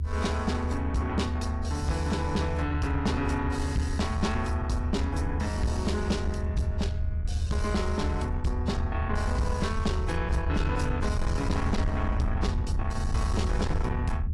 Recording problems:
lossy codec; AAC, log-spectral distance 2 dB, nothing above 11 kHz
distorted audio; soft clipping, signal-to-distortion ratio 11 dB
hum; 60 Hz, harmonics up to 480 Hz, SNR 17 dB
rumble; below 80 Hz, SNR 0 dB

